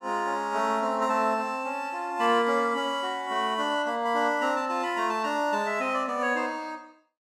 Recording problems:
none

